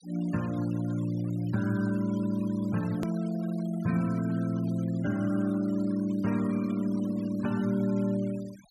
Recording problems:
noise reduction artefacts; signal-to-artefact ratio 21 dB
click at an edit; at 3 s

